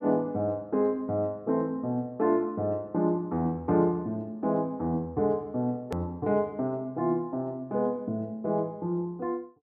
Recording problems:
hard cut with a click; at 6 s

